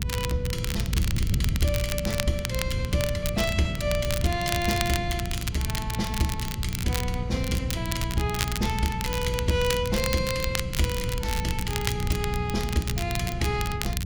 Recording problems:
hum; 60 Hz, harmonics up to 480 Hz, SNR 5 dB
wind noise; below 120 Hz, SNR 3 dB
crackling; vinyl, SNR 5 dB

